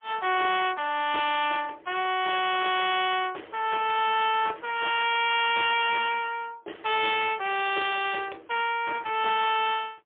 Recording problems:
telephone audio; 320 Hz to 3.5 kHz, AMR-NB, then MP3

